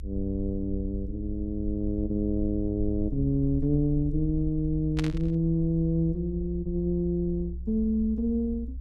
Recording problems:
rumble; below 64 Hz, SNR 9 dB
burst of static; at 5 s; peak -4 dB vs average level

